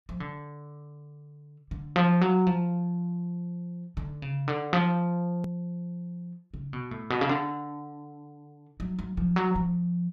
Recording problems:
hard cut with a click; at 5.5 s

